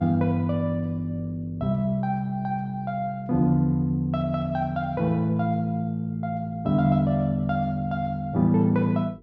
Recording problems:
hum; 50 Hz, harmonics up to 450 Hz, SNR 27 dB

